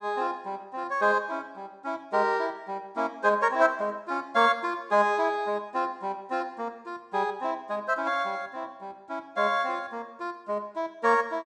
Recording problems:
none

